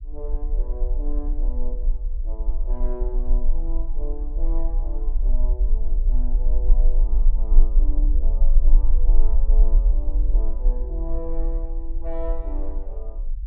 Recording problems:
low-frequency rumble; below 36 Hz, strongest tone 20 Hz, SNR -14 dB

